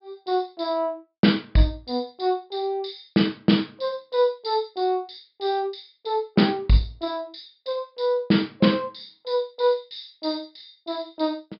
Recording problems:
treble missing; nothing above 5.2 kHz

